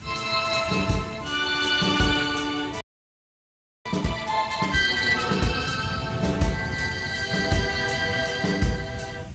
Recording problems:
lossy compression; Speex, log-spectral distance 6 dB, nothing above 7.3 kHz
background hiss; slope -1 dB per octave, SNR 25 dB
wind noise; below 210 Hz, SNR 12 dB
audio freezing; at 3 s for 1 s

